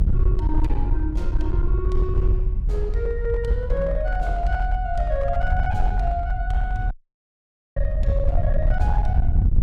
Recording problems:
distortion; hard clipping, uneven, signal-to-distortion ratio 10 dB
low-frequency rumble; below 64 Hz, SNR -4 dB
dropout; at 7 s for 1 s

